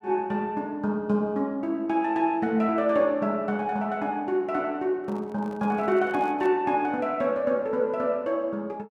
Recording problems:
handling noise; from 5 to 6.5 s; peak -12 dB vs average level

